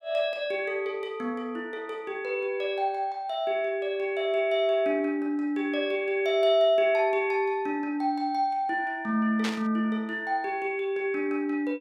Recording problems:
burst of static; at 9.5 s; peak -1 dB vs average level

